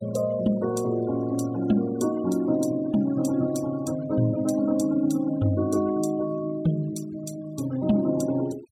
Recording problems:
noise reduction artefacts; signal-to-artefact ratio 20 dB

